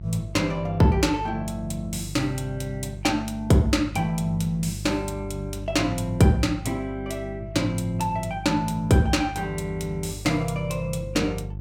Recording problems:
hum; 50 Hz, harmonics up to 400 Hz, SNR 12 dB

